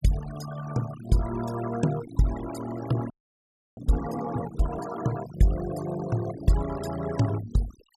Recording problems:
denoising artefacts; signal-to-artefact ratio 12 dB
audio freezing; at 3 s for 0.5 s

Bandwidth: 15 kHz